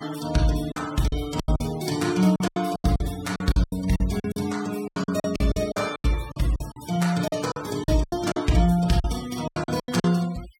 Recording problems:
denoising artefacts; signal-to-artefact ratio 16 dB
packet loss; 16% of the sound replaced, filled with silence

